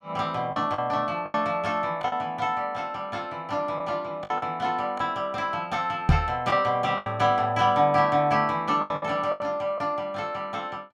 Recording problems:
packet loss; 6% of the sound replaced, filled with the last packet
knock on the microphone; at 6 s; peak +10 dB vs average level

